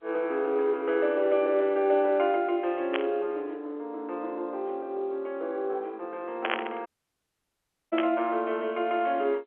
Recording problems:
phone line; 300 Hz to 3.6 kHz, G.711
static burst; at 3 s, at 6.5 s and at 8 s; peak +3 dB vs average level
dropout; at 7 s for 1 s

